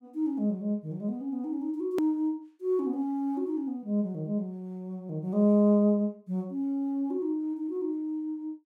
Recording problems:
click at an edit; at 2 s

